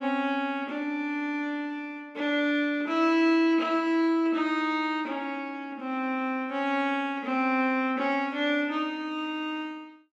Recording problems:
none

